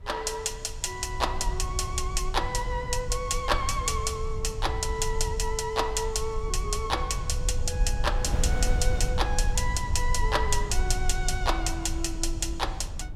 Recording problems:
rumble; below 66 Hz, SNR 3 dB
wind on the microphone; below 210 Hz, SNR 14 dB

